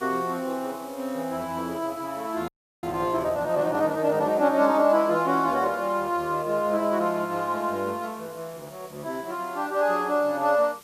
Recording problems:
background hiss; slope -2 dB per octave, SNR 23 dB
audio freezing; at 2.5 s

